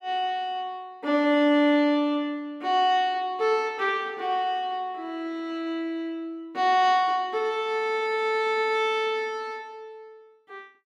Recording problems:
none

